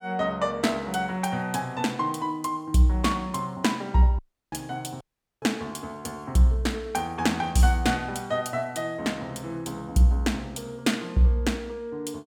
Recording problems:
audio cutting out; at 4 s and at 5 s

